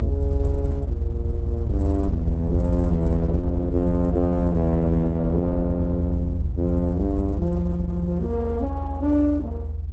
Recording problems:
codec artefacts; Opus, log-spectral distance 2 dB
rumble; below 80 Hz, strongest tone 78 Hz, SNR 2 dB

